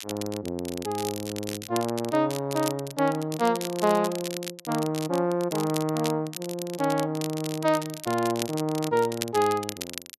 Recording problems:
crackle; vinyl, SNR 10 dB

